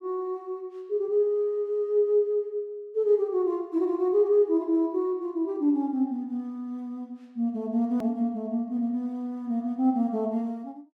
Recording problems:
click at an edit; at 8 s

